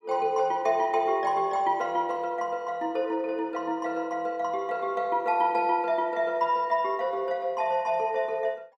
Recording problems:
none

